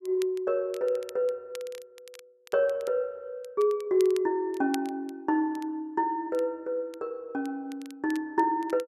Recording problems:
crackling; vinyl, SNR 22 dB

